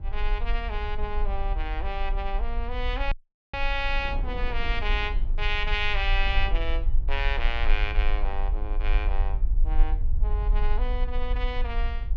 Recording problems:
treble cut off; nothing above 8 kHz
low-frequency rumble; below 44 Hz, strongest tone 22 Hz, SNR -2 dB
wind on the microphone; below 400 Hz, SNR 17 dB
audio cutting out; at 3 s

